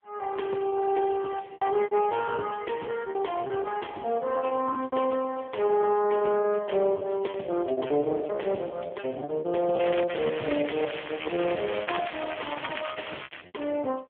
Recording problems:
telephone audio; 220 Hz to 3.3 kHz, AMR-NB
lost packets; 16% of the sound replaced, filled with repeated pitch periods
crackle; from 10 to 13 s; loose cable, SNR 9 dB

